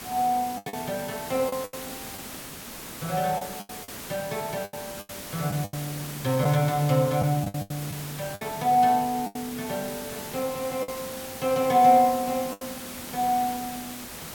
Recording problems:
hiss; slope -2 dB per octave, SNR 11 dB
lost packets; 8% of the sound replaced, filled with the last packet

